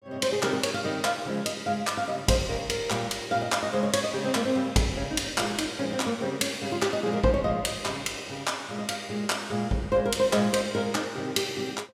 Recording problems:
none

